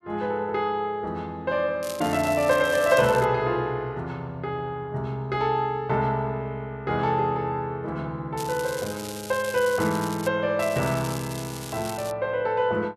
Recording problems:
crackling; from 2 to 3.5 s, from 8.5 to 10 s and from 11 to 12 s; loose cable, SNR 13 dB

